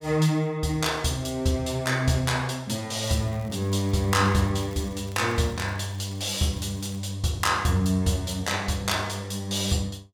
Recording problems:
crackling; from 3 to 7 s; loose cable, SNR 27 dB

